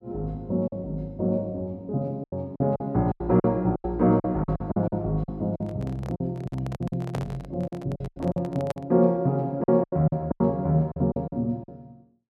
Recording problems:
lost packets; 12% of the sound replaced, filled with silence
microphone handling noise; from 5.5 to 9 s; peak -4 dB vs average level

